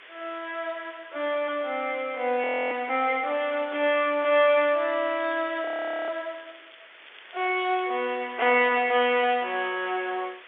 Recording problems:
phone line; 320 Hz to 3.6 kHz, G.711
hiss; SNR 21 dB
frozen audio; at 2.5 s and at 5.5 s
crackle; from 4.5 to 7 s and at 7 s; loose cable, SNR 27 dB

